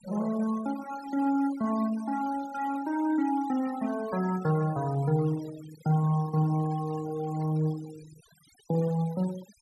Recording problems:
denoising artefacts; signal-to-artefact ratio 19 dB

